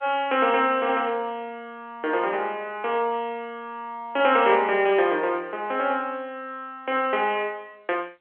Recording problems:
phone line; 300 Hz to 3.3 kHz, G.711

